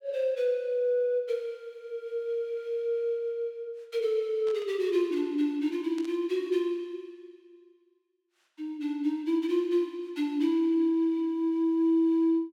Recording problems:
burst of static; at 4.5 s and at 6 s; peak -14 dB vs average level

